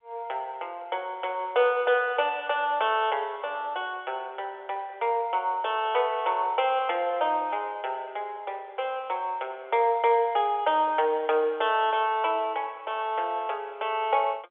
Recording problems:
phone line; 340 Hz to 3.5 kHz, G.711

